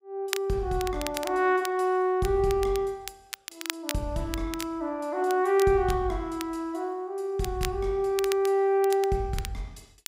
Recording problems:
crackling; vinyl, SNR 12 dB

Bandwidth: 15.5 kHz